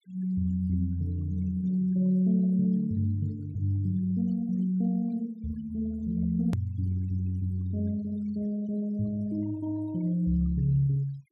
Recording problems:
noise reduction artefacts; signal-to-artefact ratio 24 dB
edit click; at 6.5 s

